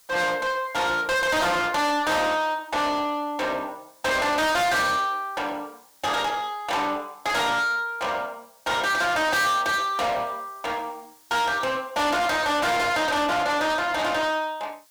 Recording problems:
distorted audio; soft clipping, signal-to-distortion ratio 6 dB
hiss; SNR 29 dB

